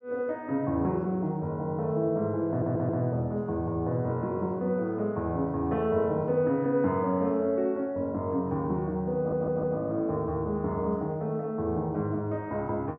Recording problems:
audio stuttering; at 2.5 s and at 9 s

